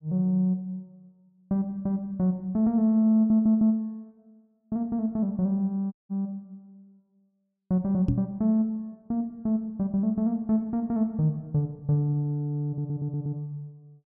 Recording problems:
stutter; at 3 s and at 13 s
dropout; at 6 s
knock on the microphone; at 8 s; peak +4 dB vs average level

